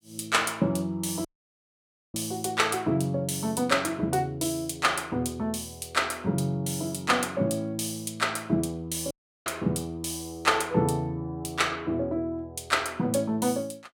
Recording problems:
audio cutting out; at 1.5 s for 1 s and at 9 s

